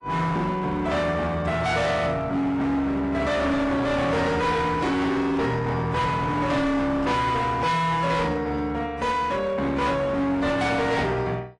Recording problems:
codec artefacts; AAC, log-spectral distance 2 dB, nothing above 10.4 kHz
distortion; hard clipping, signal-to-distortion ratio 8 dB

